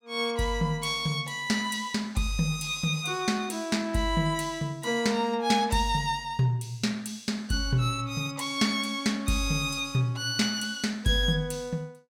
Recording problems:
none

